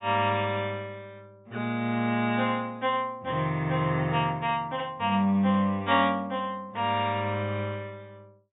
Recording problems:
treble missing; nothing above 4 kHz

